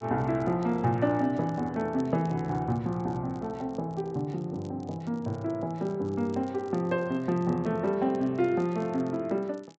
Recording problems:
treble missing; nothing above 8 kHz
crackling; vinyl, SNR 30 dB

